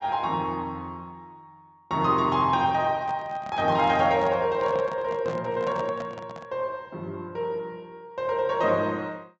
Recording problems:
treble cut off; nothing above 8 kHz
handling noise; from 3 to 6.5 s; peak -7 dB vs average level

